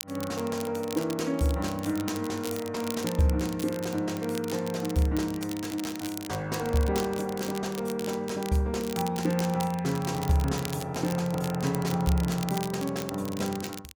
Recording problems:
crackle; vinyl, SNR 12 dB

